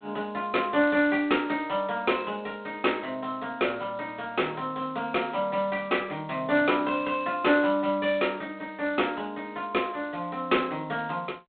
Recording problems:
phone line; 150 Hz to 3.8 kHz, G.726

